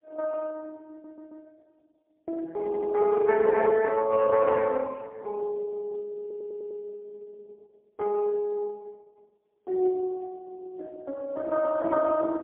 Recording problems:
phone line; 320 Hz to 2.2 kHz, AMR-NB, then MP3
audio stuttering; at 1 s, at 2.5 s and at 6 s

